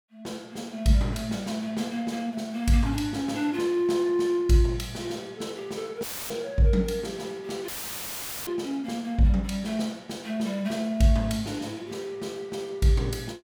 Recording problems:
dropout; at 6 s and at 7.5 s for 1 s; filled with static

